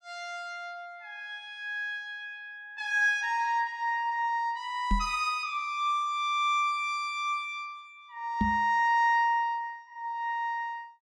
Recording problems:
knock on the microphone; at 5 s and at 8.5 s; peak +4 dB vs average level

